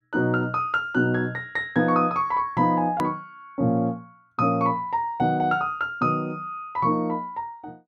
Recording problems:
click at an edit; at 3 s

